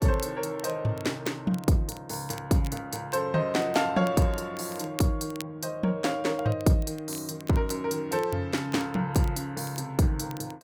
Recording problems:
crackling; vinyl, SNR 20 dB

